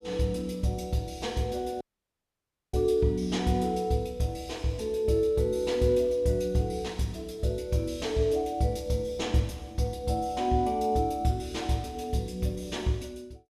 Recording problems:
dropout; at 2 s for 1 s

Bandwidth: 14.5 kHz